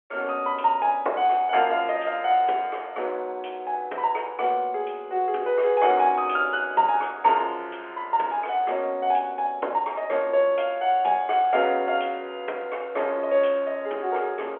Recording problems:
phone line; 320 Hz to 3.4 kHz, G.711

